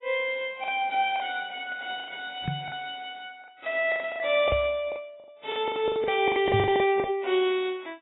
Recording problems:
codec artefacts; AAC, then AAC, log-spectral distance 4 dB, nothing above 3.2 kHz
packet loss; 14% of the sound replaced, filled with the last packet
knock on the microphone; at 2.5 s, at 4.5 s and at 6.5 s; peak +1 dB vs average level

